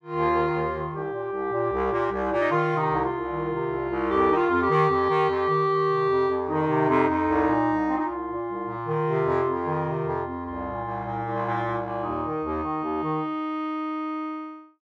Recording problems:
none

